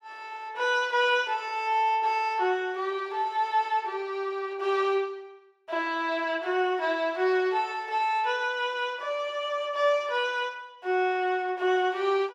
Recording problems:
none

